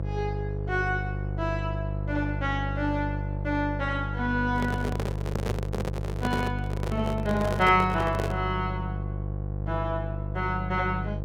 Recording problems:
electrical hum; 50 Hz, harmonics up to 700 Hz, SNR 3 dB
handling noise; from 4.5 to 8.5 s; peak +3 dB vs average level

